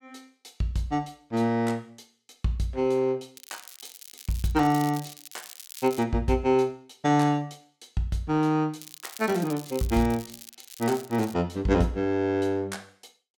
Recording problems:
crackling; from 3.5 to 6 s and from 9 to 11 s; loose cable, SNR 16 dB

